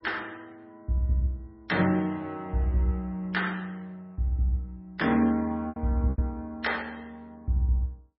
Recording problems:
codec artefacts; MP3, log-spectral distance 2 dB, nothing above 5.3 kHz
packet loss; 2% of the sound replaced, filled with repeated pitch periods

